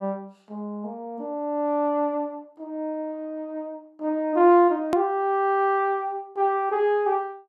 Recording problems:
edit click; at 5 s

